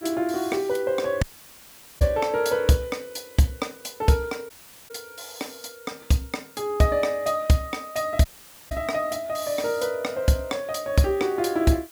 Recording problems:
background hiss; slope +1 dB per octave, SNR 23 dB
audio cutting out; at 1 s for 1 s, at 4.5 s and at 8.5 s

